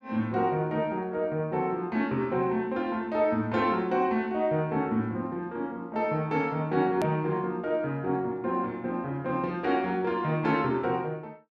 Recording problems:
hard cut with a click; at 7 s

